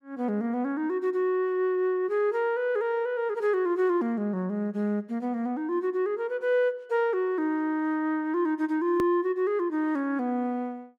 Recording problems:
click at an edit; at 9 s

